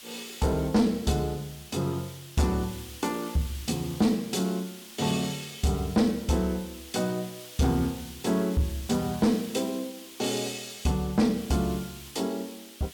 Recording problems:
distortion; soft clipping, signal-to-distortion ratio 12 dB
background hiss; slope +3 dB per octave, SNR 16 dB

